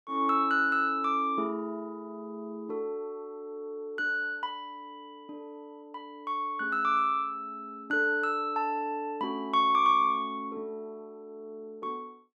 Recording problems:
none

